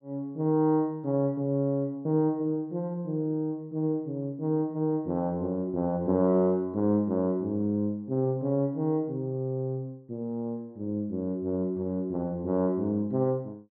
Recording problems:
none

